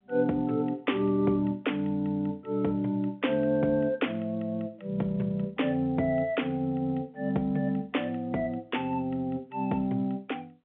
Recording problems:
telephone audio; 190 Hz to 3.5 kHz, G.711

